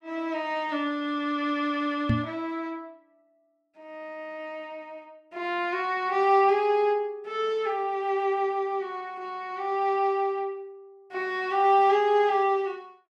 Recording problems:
microphone bump; at 2 s; peak +5 dB vs average level

